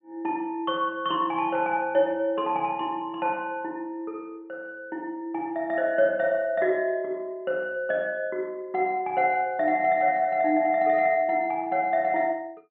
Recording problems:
treble missing; nothing above 4 kHz

